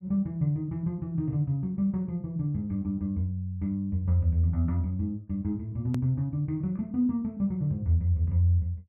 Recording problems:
edit click; at 6 s

